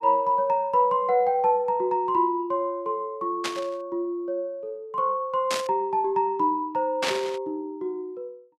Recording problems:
static burst; at 3.5 s, at 5.5 s and at 7 s; peak +3 dB vs average level

